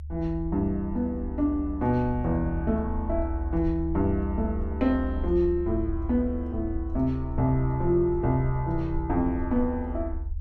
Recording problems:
rumble; below 74 Hz, SNR 7 dB

